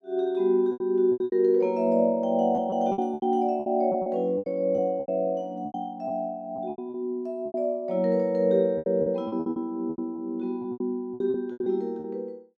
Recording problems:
lost packets; 14% of the sound replaced, filled with repeated pitch periods

